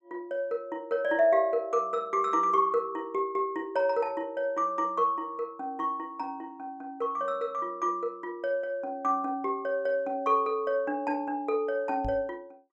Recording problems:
microphone thump; at 12 s; peak -5 dB vs average level

